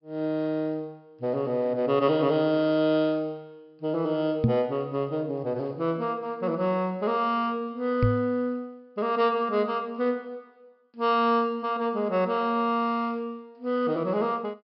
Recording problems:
low-pass filter; nothing above 5.5 kHz
microphone thump; at 4.5 s and at 8 s; peak +7 dB vs average level

